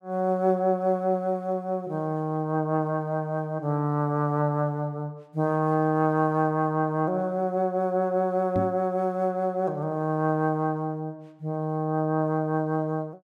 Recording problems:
microphone bump; at 8.5 s; peak 0 dB vs average level

